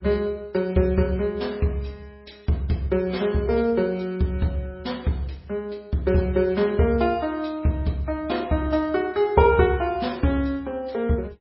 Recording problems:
codec artefacts; MP3, log-spectral distance 2 dB, nothing above 5.3 kHz

